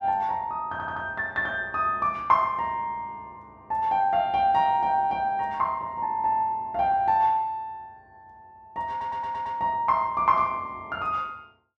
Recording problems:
stutter; at 0.5 s and at 9 s

